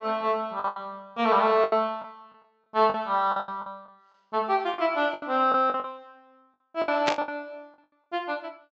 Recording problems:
treble cut off; nothing above 8 kHz
lost packets; 13% of the sound replaced, filled with the last packet
static burst; at 7 s; peak +4 dB vs average level

